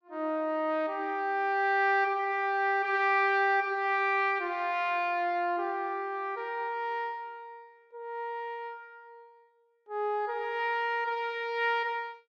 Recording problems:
none

